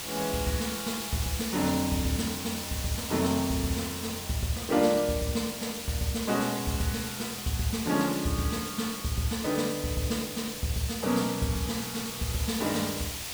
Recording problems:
background hiss; slope 0 dB per octave, SNR 5 dB

